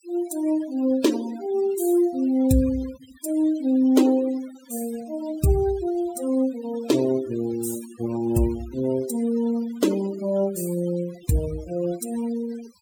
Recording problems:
noise reduction artefacts; signal-to-artefact ratio 18 dB

